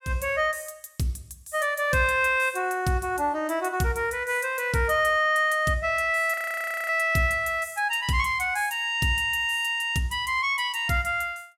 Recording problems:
frozen audio; at 6.5 s for 0.5 s

